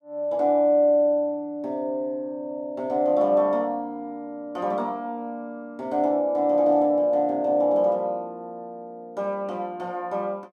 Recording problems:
none

